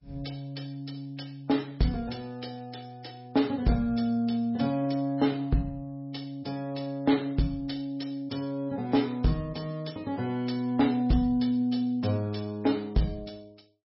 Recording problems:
codec artefacts; MP3, log-spectral distance 3 dB, nothing above 5.3 kHz
distorted audio; hard clipping, signal-to-distortion ratio 12 dB

